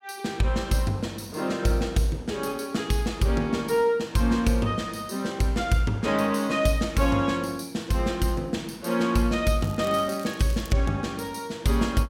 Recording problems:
crackling; from 9.5 to 11 s; loose cable, SNR 21 dB

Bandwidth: 16 kHz